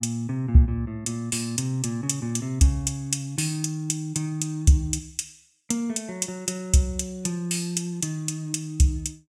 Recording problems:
none

